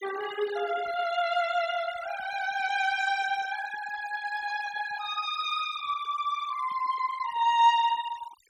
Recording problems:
denoising artefacts; signal-to-artefact ratio 14 dB

